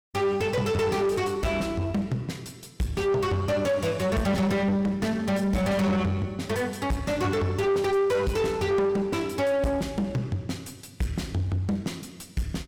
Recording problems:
distorted audio; soft clipping, signal-to-distortion ratio 5 dB

